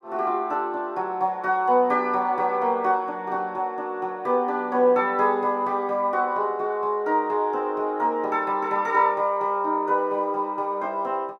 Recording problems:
none

